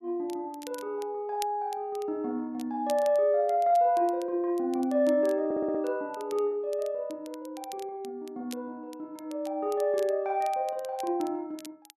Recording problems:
crackle; vinyl, SNR 22 dB
stutter; at 5.5 s

